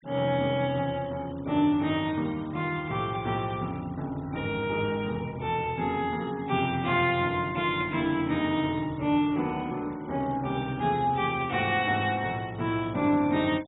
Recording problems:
low-pass filter; nothing above 4 kHz
noise reduction artefacts; signal-to-artefact ratio 26 dB

